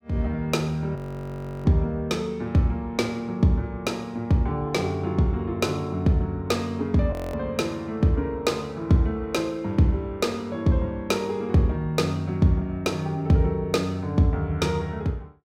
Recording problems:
frozen audio; at 1 s for 0.5 s and at 7 s

